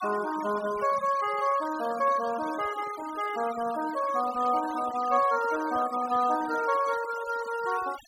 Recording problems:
noise reduction artefacts; signal-to-artefact ratio 15 dB

